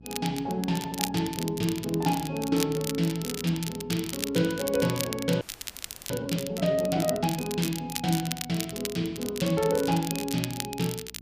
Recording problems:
electrical hum; 60 Hz, harmonics up to 660 Hz, SNR 21 dB
crackle; vinyl, SNR 8 dB
frozen audio; at 5.5 s for 0.5 s

